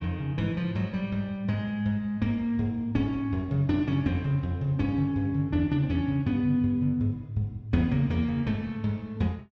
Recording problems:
none

